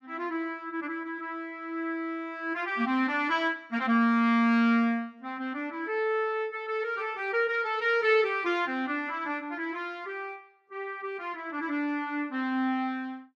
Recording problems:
none

